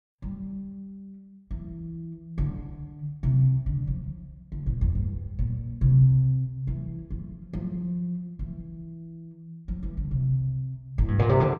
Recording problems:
none

